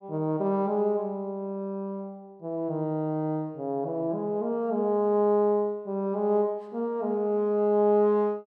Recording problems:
none

